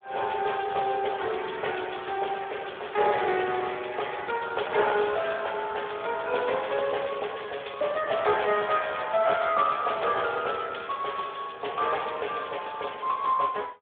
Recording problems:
phone line; 340 Hz to 3.5 kHz, Speex

